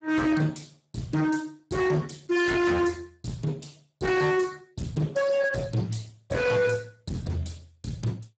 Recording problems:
codec artefacts; Speex, log-spectral distance 5 dB, nothing above 7.8 kHz
distortion; hard clipping, signal-to-distortion ratio 7 dB

